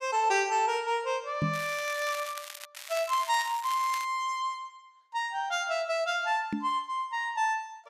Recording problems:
microphone bump; at 1.5 s and at 6.5 s; peak +3 dB vs average level
crackling; from 1.5 to 2.5 s and from 3 to 4 s; loose cable, SNR 12 dB

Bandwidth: 14.5 kHz